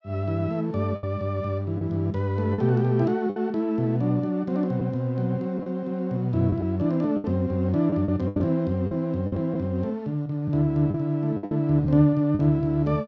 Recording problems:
packet loss; 6% of the sound replaced, filled with the last packet

